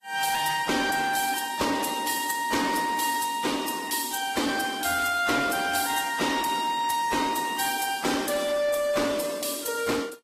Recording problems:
lossy compression; AAC, then AAC, log-spectral distance 6 dB, nothing above 15.1 kHz
distorted audio; hard clipping, signal-to-distortion ratio 12 dB

